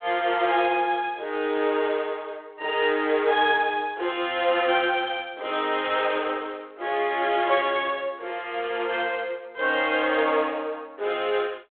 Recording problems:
telephone audio; 320 Hz to 3.6 kHz, G.726

